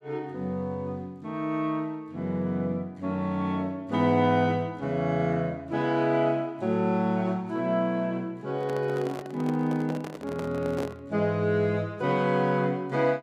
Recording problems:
microphone handling noise; from 8.5 to 11 s; peak -3 dB vs average level

